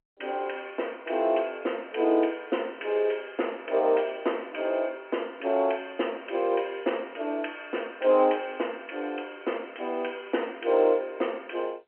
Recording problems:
telephone audio; 260 Hz to 3.1 kHz, G.711

